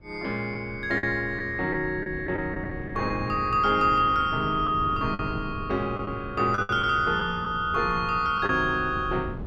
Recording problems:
wind noise; below 220 Hz, SNR 13 dB
lost packets; 5% of the sound replaced, filled with the last packet

